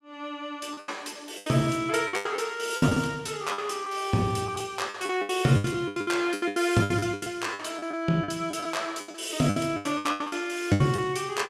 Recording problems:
lost packets; 17% of the sound replaced, filled with the last packet

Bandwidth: 14.5 kHz